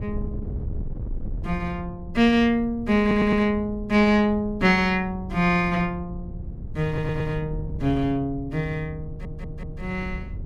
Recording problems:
wind noise; below 120 Hz, SNR 13 dB
stutter; at 3 s, at 7 s and at 9 s

